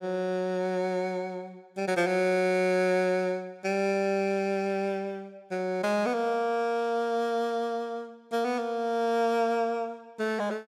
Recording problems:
none

